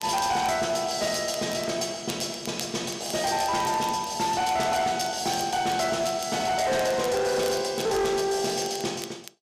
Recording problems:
distortion; hard clipping, signal-to-distortion ratio 12 dB
crackling; vinyl, SNR 18 dB

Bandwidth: 14.5 kHz